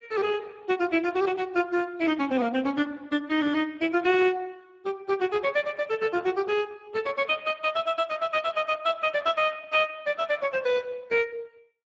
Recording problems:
lossy compression; Speex, log-spectral distance 4 dB

